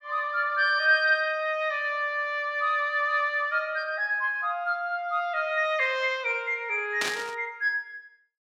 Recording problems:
burst of static; at 7 s; peak +1 dB vs average level

